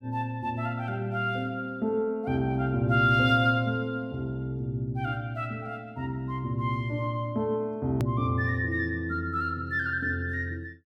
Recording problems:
click at an edit; at 8 s

